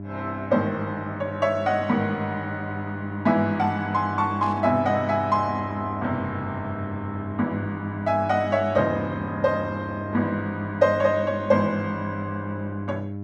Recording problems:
electrical hum; 50 Hz, harmonics up to 700 Hz, SNR 8 dB
burst of static; at 4.5 s; peak -13 dB vs average level

